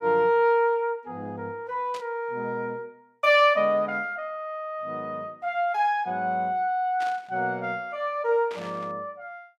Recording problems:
static burst; at 2 s, at 7 s and at 8.5 s; peak -11 dB vs average level

